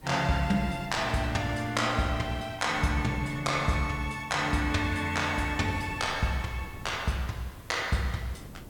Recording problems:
hiss; slope +1 dB per octave, SNR 27 dB
wind on the microphone; below 290 Hz, SNR 19 dB

